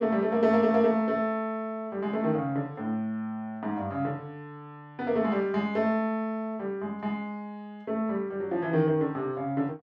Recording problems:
none

